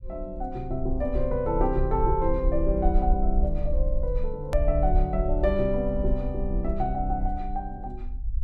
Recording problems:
low-frequency rumble; below 52 Hz, SNR 2 dB
hard cut with a click; at 4.5 s

